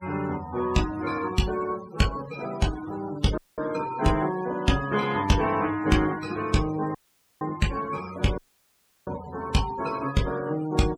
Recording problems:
noise reduction artefacts; signal-to-artefact ratio 15 dB
audio cutting out; at 3.5 s, at 7 s and at 8.5 s for 0.5 s

